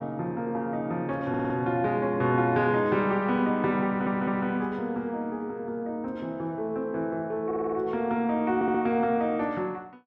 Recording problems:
audio stuttering; 4 times, first at 1.5 s

